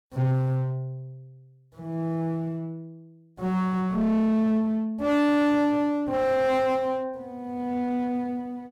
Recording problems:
distortion; hard clipping, uneven, signal-to-distortion ratio 4 dB

